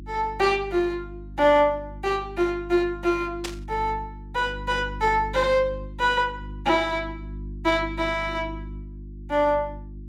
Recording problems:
electrical hum; 50 Hz, harmonics up to 350 Hz, SNR 14 dB
static burst; at 3.5 s; peak -3 dB vs average level

